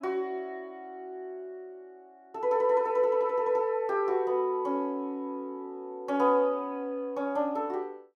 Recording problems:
none

